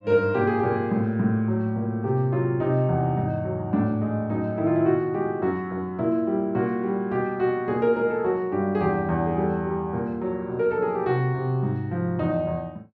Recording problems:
none

